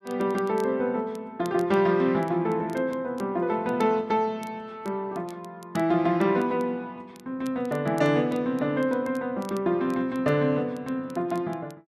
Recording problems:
crackling; vinyl, SNR 27 dB

